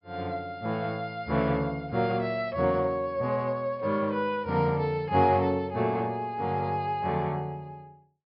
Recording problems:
low-pass filter; nothing above 5.5 kHz

